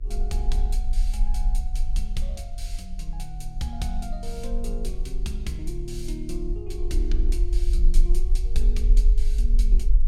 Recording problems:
hum; 60 Hz, harmonics up to 720 Hz, SNR 23 dB
rumble; below 38 Hz, strongest tone 22 Hz, SNR -8 dB

